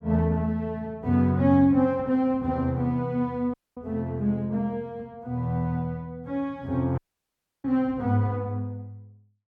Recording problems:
dropout; at 3.5 s and at 7 s for 0.5 s

